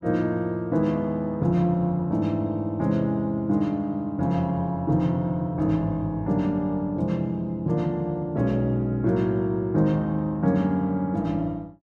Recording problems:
none

